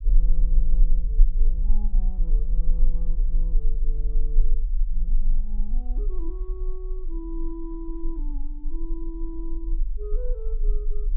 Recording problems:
low-pass filter; nothing above 4 kHz
rumble; below 34 Hz, strongest tone 18 Hz, SNR -14 dB

